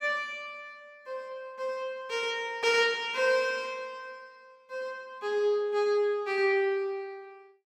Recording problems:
none

